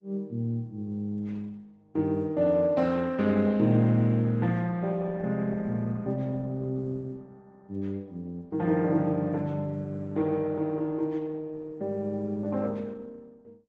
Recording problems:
lossy codec; Opus, log-spectral distance 2 dB

